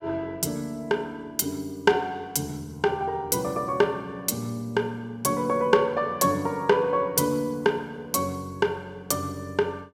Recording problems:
none

